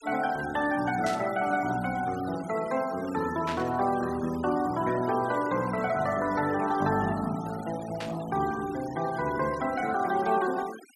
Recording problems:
denoising artefacts; signal-to-artefact ratio 17 dB
burst of static; at 1 s, at 3.5 s and at 8 s; peak -4 dB vs average level

